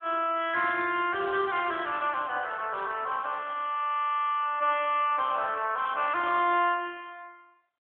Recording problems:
phone line; 300 Hz to 3.5 kHz, AMR-NB

